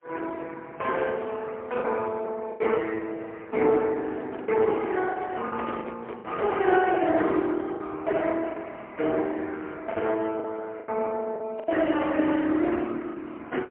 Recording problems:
telephone audio; 260 Hz to 3.2 kHz, AMR-NB, then MP3
packet loss; 5% of the sound replaced, filled with the last packet
handling noise; from 4 to 7 s; peak -6 dB vs average level

